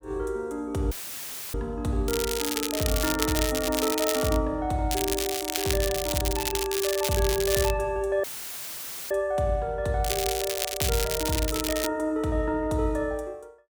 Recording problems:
audio cutting out; at 1 s for 0.5 s and at 8 s for 1 s; filled with static
crackling; from 2 to 4.5 s, from 5 to 7.5 s and from 10 to 12 s; loose cable, SNR 2 dB

